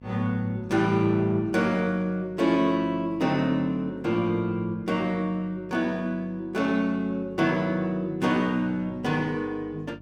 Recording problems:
hum; 50 Hz, harmonics up to 700 Hz, SNR 22 dB

